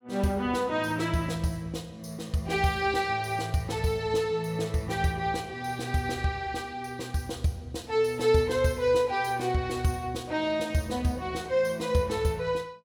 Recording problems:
none

